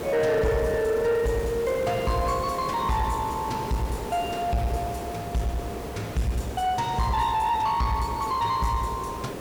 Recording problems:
distortion; soft clipping, signal-to-distortion ratio 10 dB
hiss; SNR 9 dB

